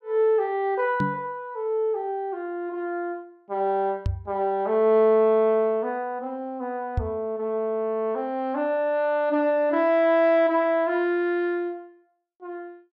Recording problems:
microphone thump; at 1 s, at 4 s and at 7 s; peak +2 dB vs average level

